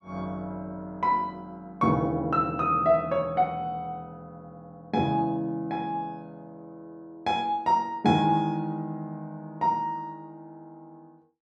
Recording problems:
none

